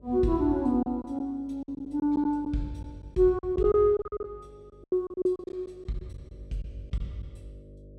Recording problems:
electrical hum; 50 Hz, harmonics up to 600 Hz, SNR 25 dB
packet loss; 12% of the sound replaced, filled with silence

